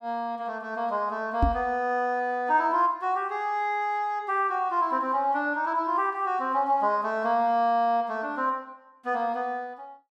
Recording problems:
knock on the microphone; at 1.5 s; peak +5 dB vs average level

